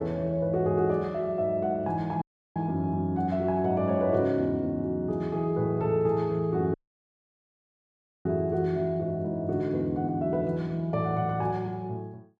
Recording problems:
dropout; at 2 s and at 6.5 s for 1.5 s

